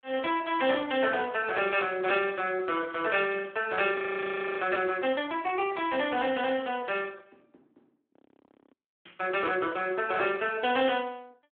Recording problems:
phone line; 220 Hz to 3.4 kHz, Speex
frozen audio; at 4 s for 0.5 s and at 8 s for 0.5 s

